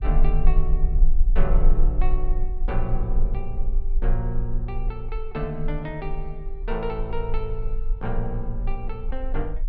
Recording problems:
low-frequency rumble; below 36 Hz, strongest tone 20 Hz, SNR -4 dB

